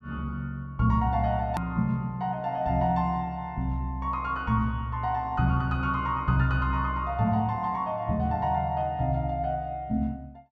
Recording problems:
click at an edit; at 1.5 s

